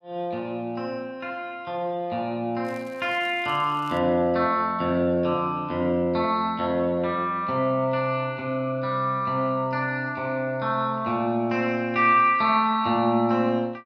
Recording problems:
crackling; from 2.5 to 4 s; loose cable, SNR 28 dB

